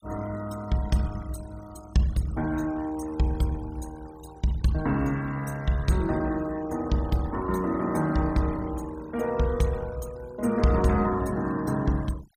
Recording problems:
noise reduction artefacts; signal-to-artefact ratio 20 dB

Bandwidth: 15.5 kHz